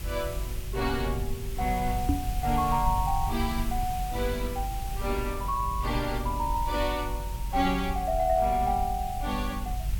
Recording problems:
background hiss; slope -1 dB per octave, SNR 13 dB
rumble; below 70 Hz, strongest tone 48 Hz, SNR 5 dB
microphone bump; at 2 s; peak +8 dB vs average level

